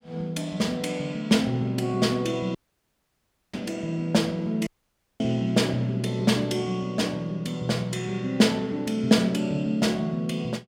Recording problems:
dropout; at 2.5 s for 1 s and at 4.5 s for 0.5 s

